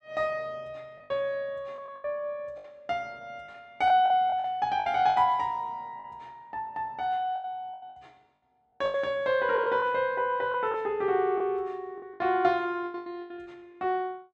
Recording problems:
packet loss; 11% of the sound replaced, filled with the last packet

